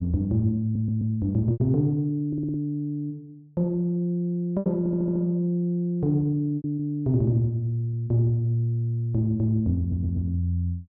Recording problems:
packet loss; 3% of the sound replaced, filled with repeated pitch periods
audio stuttering; 4 times, first at 0.5 s

